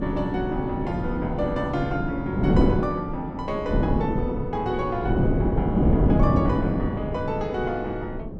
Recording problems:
wind noise; below 310 Hz, SNR -3 dB

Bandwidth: 12 kHz